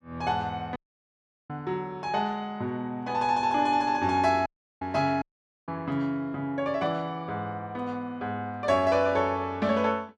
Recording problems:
dropout; at 1 s for 0.5 s, at 4.5 s and at 5 s

